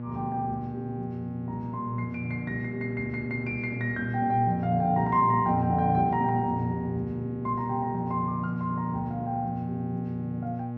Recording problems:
hum; 60 Hz, harmonics up to 1.1 kHz, SNR 5 dB

